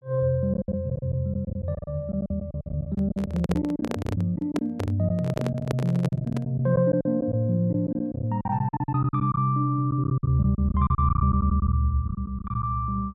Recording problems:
lost packets; 15% of the sound replaced, filled with silence
microphone handling noise; from 3 to 6.5 s; peak 0 dB vs average level

